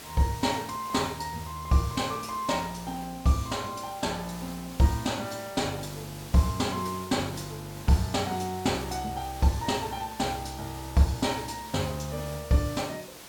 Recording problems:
hiss; slope -2 dB per octave, SNR 14 dB

